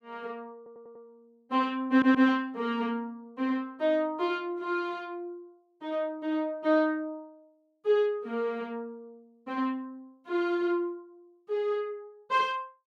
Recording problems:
stutter; at 0.5 s and at 2 s

